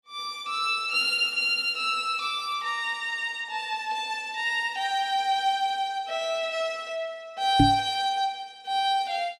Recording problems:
microphone thump; at 7.5 s; peak +9 dB vs average level

